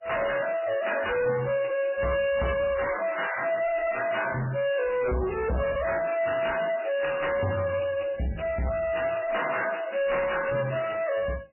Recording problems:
lossy codec; MP3, then AAC, log-spectral distance 7 dB, nothing above 2.9 kHz
distortion; soft clipping, signal-to-distortion ratio 7 dB

